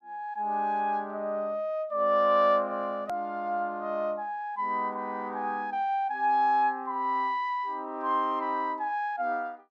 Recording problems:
click at an edit; at 3 s

